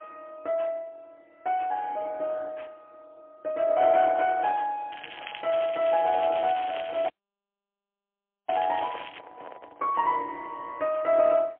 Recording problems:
telephone audio; 240 Hz to 3.3 kHz, AMR-NB, then MP3
crackle; from 5 to 9 s; loose cable, SNR 15 dB
handling noise; from 5 to 10 s; peak -11 dB vs average level
dropout; at 7 s for 1.5 s

